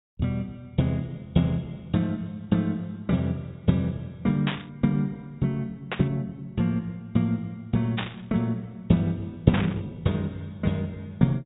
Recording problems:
treble missing; nothing above 4 kHz
static burst; 4 times, first at 4.5 s; peak +1 dB vs average level

